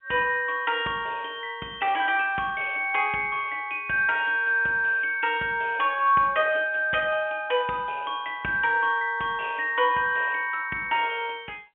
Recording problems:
phone line; 220 Hz to 3.4 kHz, G.711

